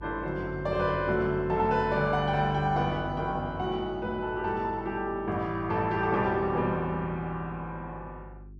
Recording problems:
hum; 50 Hz, harmonics up to 400 Hz, SNR 17 dB

